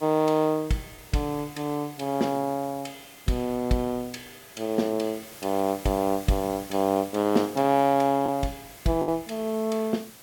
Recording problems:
background hiss; slope -2 dB per octave, SNR 18 dB
packet loss; 1.1% of the sound replaced, filled with the last packet

